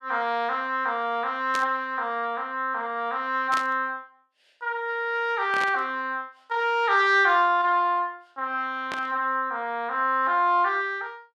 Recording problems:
burst of static; 4 times, first at 1.5 s; peak -4 dB vs average level

